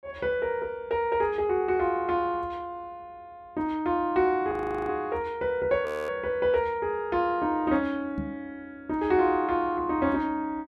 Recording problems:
audio freezing; at 4.5 s and at 6 s
knock on the microphone; at 8 s; peak -2 dB vs average level

